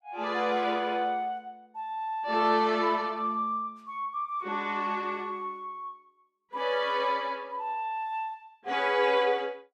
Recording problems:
none

